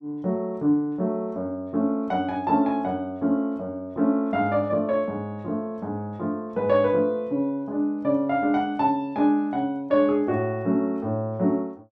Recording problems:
none

